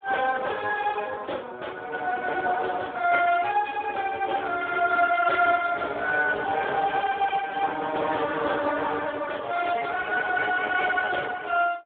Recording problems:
telephone audio; 320 Hz to 2.1 kHz, Speex

